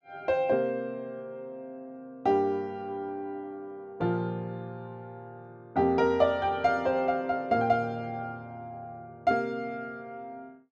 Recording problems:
none

